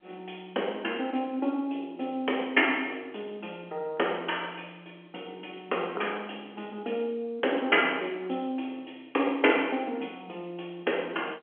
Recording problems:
telephone audio; 300 Hz to 3.4 kHz, G.711

